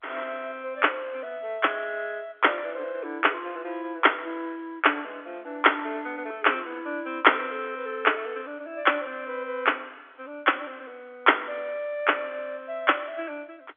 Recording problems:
telephone audio; 260 Hz to 3.5 kHz, G.711

